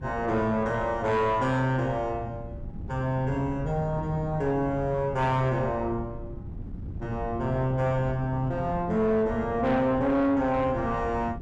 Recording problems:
distorted audio; soft clipping, signal-to-distortion ratio 12 dB
wind noise; below 180 Hz, SNR 12 dB

